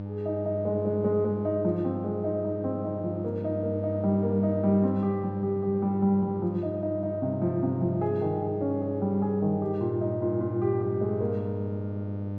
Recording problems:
hum; 50 Hz, harmonics up to 900 Hz, SNR 7 dB

